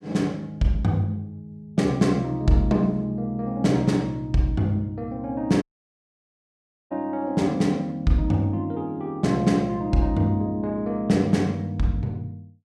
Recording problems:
audio cutting out; at 5.5 s for 1.5 s

